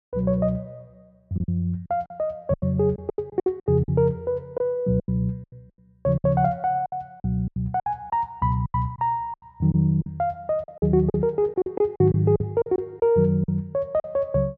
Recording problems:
packet loss; 13% of the sound replaced, filled with silence

